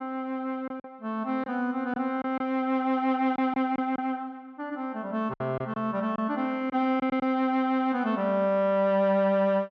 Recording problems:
low-pass filter; nothing above 8 kHz
packet loss; 4% of the sound replaced, filled with silence

